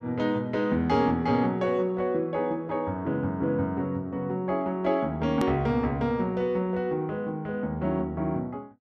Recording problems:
edit click; at 5.5 s

